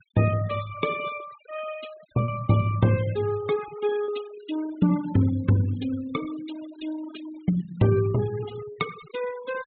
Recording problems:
low-pass filter; nothing above 4 kHz
denoising artefacts; signal-to-artefact ratio 16 dB
packet loss; 1.3% of the sound replaced, filled with repeated pitch periods

